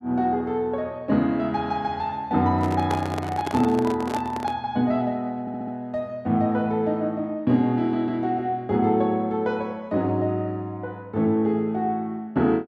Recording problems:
microphone handling noise; from 2.5 to 4.5 s; peak -1 dB vs average level
audio stuttering; at 5.5 s

